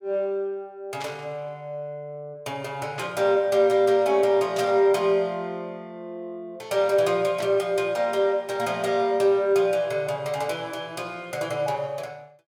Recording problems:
burst of static; 4 times, first at 1 s; peak -8 dB vs average level

